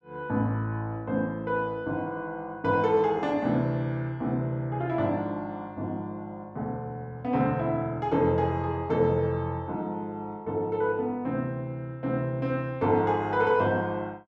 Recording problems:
none

